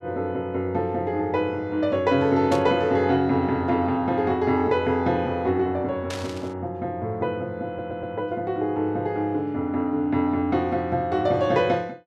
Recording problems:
static burst; at 2.5 s and at 6 s; peak -6 dB vs average level
stutter; at 7.5 s

